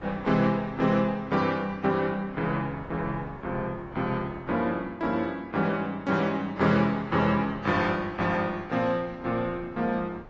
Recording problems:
codec artefacts; AAC, log-spectral distance 2 dB, nothing above 7.1 kHz
wind noise; below 700 Hz, SNR 21 dB

